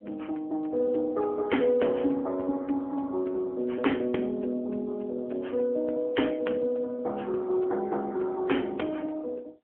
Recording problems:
phone line; 220 Hz to 3.7 kHz, AMR-NB

